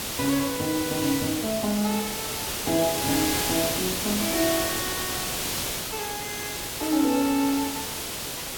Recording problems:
background hiss; slope -2 dB per octave, SNR 1 dB

